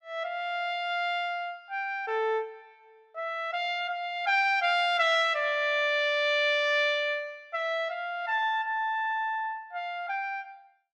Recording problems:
none

